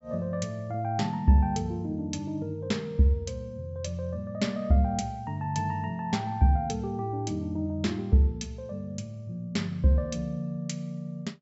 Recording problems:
low-pass filter; nothing above 7.6 kHz

